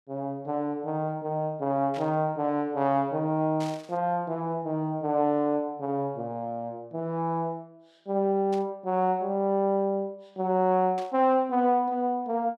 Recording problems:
burst of static; 4 times, first at 2 s; peak -11 dB vs average level

